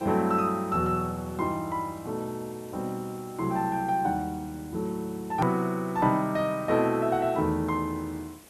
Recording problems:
background hiss; slope -3 dB per octave, SNR 22 dB
hard cut with a click; at 5.5 s

